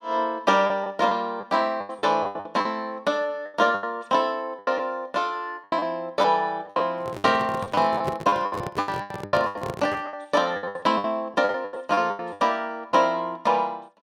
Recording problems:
packet loss; 15% of the sound replaced, filled with the last packet
handling noise; from 7 to 10 s; peak 0 dB vs average level

